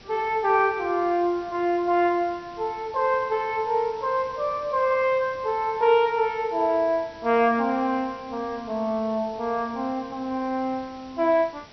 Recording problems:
treble missing; nothing above 5.9 kHz
hiss; slope -3 dB per octave, SNR 23 dB

